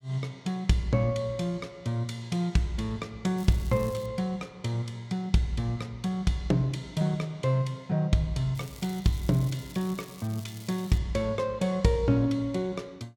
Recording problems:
crackling; at 3.5 s and from 8.5 to 11 s; loose cable, SNR 20 dB

